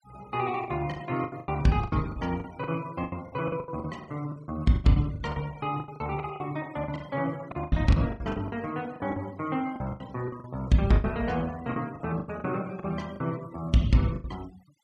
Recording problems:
denoising artefacts; signal-to-artefact ratio 23 dB
lost packets; 16% of the sound replaced, filled with the last packet

